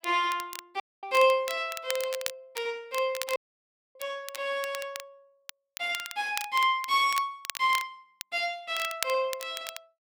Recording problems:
crackle; vinyl, SNR 11 dB
dropout; at 1 s and at 3.5 s for 0.5 s

